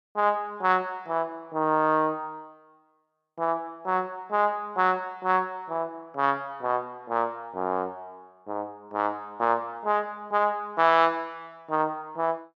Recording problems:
none

